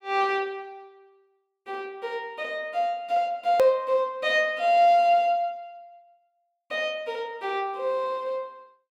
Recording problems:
edit click; at 3.5 s

